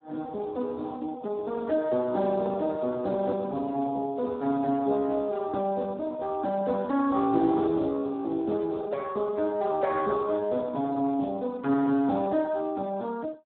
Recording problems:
telephone audio; 220 Hz to 2.2 kHz, Speex

